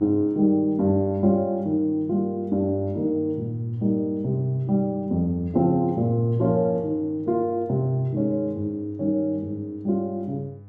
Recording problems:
hum; 50 Hz, harmonics up to 500 Hz, SNR 21 dB

